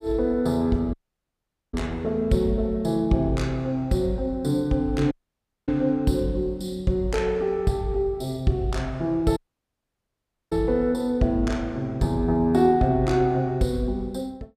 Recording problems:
audio cutting out; at 1 s for 1 s, at 5 s for 0.5 s and at 9.5 s for 1 s

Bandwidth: 15.5 kHz